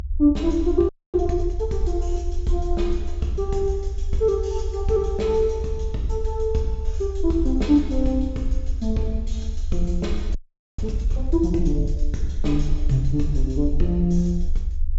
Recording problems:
low-pass filter; nothing above 8 kHz
low-frequency rumble; below 68 Hz, strongest tone 20 Hz, SNR 4 dB
frozen audio; at 1 s and at 10 s

